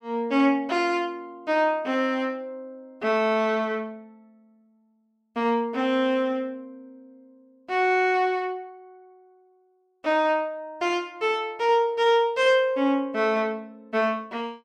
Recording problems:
none

